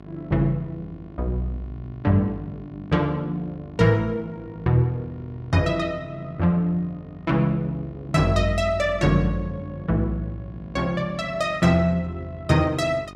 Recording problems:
mains hum; 50 Hz, harmonics up to 1.5 kHz, SNR 20 dB

